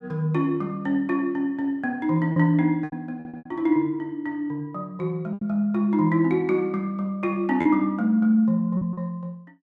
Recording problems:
lost packets; 4% of the sound replaced, filled with repeated pitch periods
stutter; at 3 s

